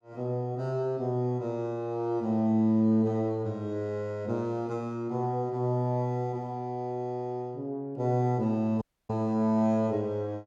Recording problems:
audio cutting out; at 9 s

